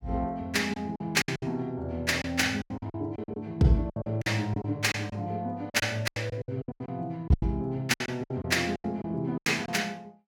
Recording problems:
lost packets; 15% of the sound replaced, filled with silence

